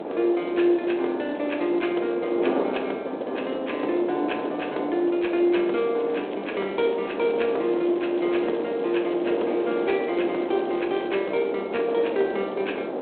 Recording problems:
telephone audio; 260 Hz to 3.6 kHz, G.726
wind noise; below 640 Hz, SNR 5 dB
crackling; from 6 to 11 s; loose cable, SNR 24 dB

